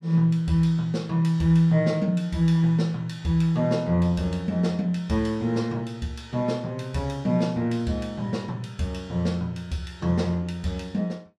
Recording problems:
none

